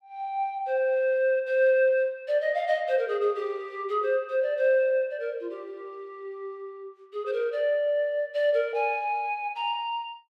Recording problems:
none

